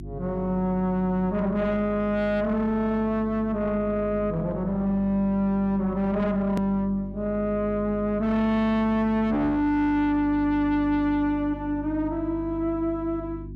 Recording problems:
distorted audio; soft clipping, signal-to-distortion ratio 7 dB
electrical hum; 50 Hz, harmonics up to 350 Hz, SNR 14 dB
hard cut with a click; at 6.5 s

